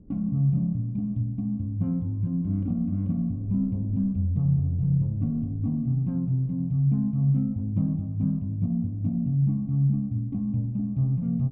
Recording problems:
wind noise; below 210 Hz, SNR 23 dB

